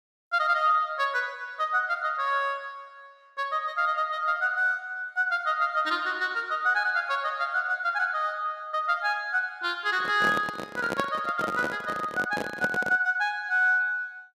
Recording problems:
handling noise; from 10 to 13 s; peak 0 dB vs average level

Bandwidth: 14.5 kHz